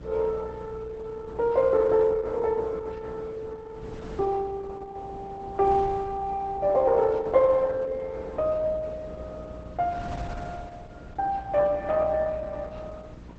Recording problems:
lossy compression; Opus, log-spectral distance 2 dB, nothing above 7.8 kHz
hum; 60 Hz, harmonics up to 660 Hz, SNR 20 dB
wind on the microphone; below 410 Hz, SNR 19 dB

